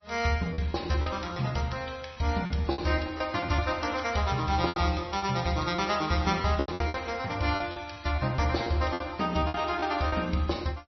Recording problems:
lossy codec; MP3, log-spectral distance 4 dB, nothing above 5.8 kHz
lost packets; 10% of the sound replaced, filled with repeated pitch periods

